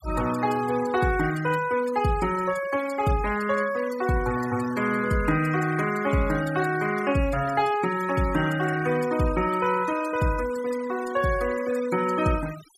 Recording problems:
denoising artefacts; signal-to-artefact ratio 15 dB

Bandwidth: 14.5 kHz